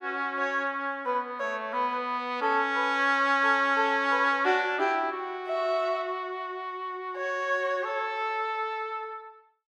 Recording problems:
none

